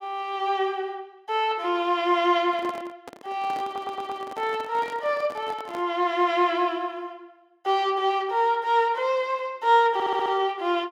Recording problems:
handling noise; from 2.5 to 6 s; peak -10 dB vs average level
audio stuttering; at 3.5 s and at 10 s

